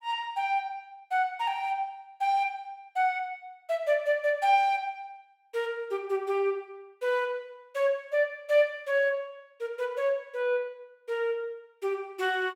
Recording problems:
none

